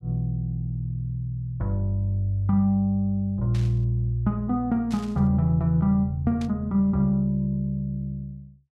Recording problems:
static burst; at 3.5 s, at 5 s and at 6.5 s; peak -13 dB vs average level

